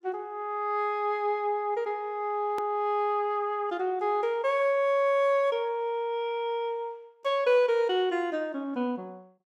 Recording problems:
edit click; at 2.5 s

